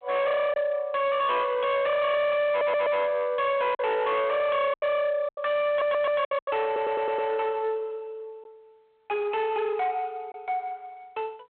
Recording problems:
telephone audio; 990 Hz to 3.3 kHz, G.726
distortion; soft clipping, signal-to-distortion ratio 7 dB
packet loss; 4% of the sound replaced, filled with silence
stutter; at 2.5 s, at 5.5 s and at 6.5 s

